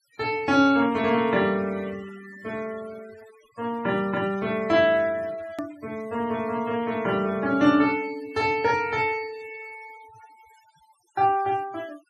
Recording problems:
denoising artefacts; signal-to-artefact ratio 22 dB
hard cut with a click; at 5.5 s

